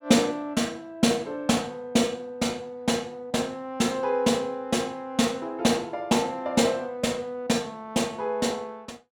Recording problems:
none

